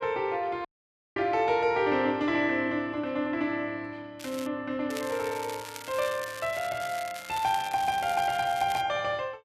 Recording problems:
dropout; at 0.5 s for 0.5 s
crackling; at 4 s and from 5 to 9 s; loose cable, SNR 14 dB

